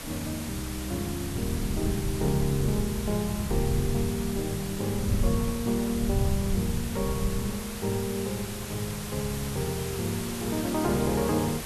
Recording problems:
background hiss; slope -2 dB per octave, SNR 7 dB
wind noise; below 120 Hz, SNR 5 dB

